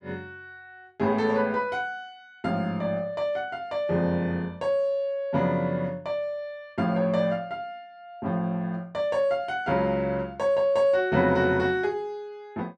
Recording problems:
none

